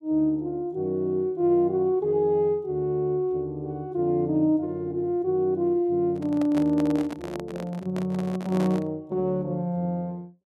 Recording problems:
microphone handling noise; from 6 to 9 s; peak -4 dB vs average level

